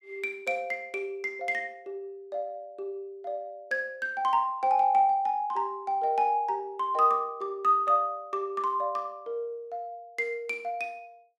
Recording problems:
none

